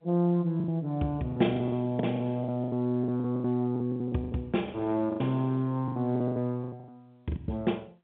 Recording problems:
telephone audio; 86 Hz to 3.8 kHz, G.711
lost packets; 18% of the sound replaced, filled with the last packet

